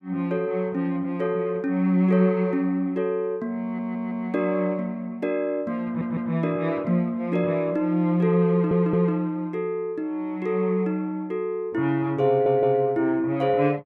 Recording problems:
stutter; 4 times, first at 3.5 s

